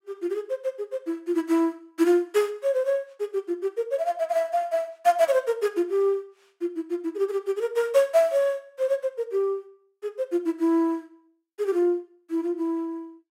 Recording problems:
none

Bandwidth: 16 kHz